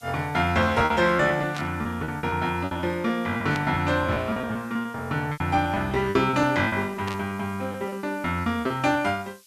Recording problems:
background hiss; slope +5 dB per octave, SNR 27 dB
lost packets; 13% of the sound replaced, filled with repeated pitch periods
static burst; at 1.5 s, at 3.5 s and at 7 s; peak -6 dB vs average level

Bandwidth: 14 kHz